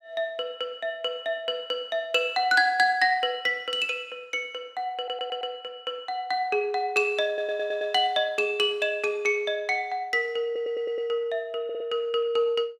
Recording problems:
stutter; 4 times, first at 5 s

